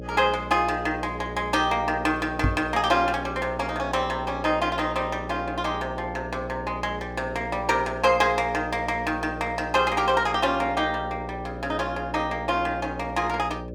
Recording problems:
mains hum; 60 Hz, harmonics up to 600 Hz, SNR 11 dB
knock on the microphone; at 2.5 s; peak +4 dB vs average level

